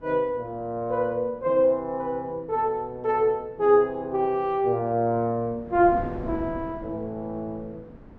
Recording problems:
wind noise; below 340 Hz, SNR 18 dB

